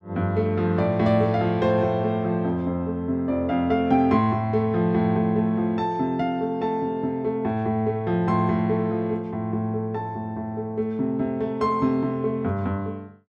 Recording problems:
none

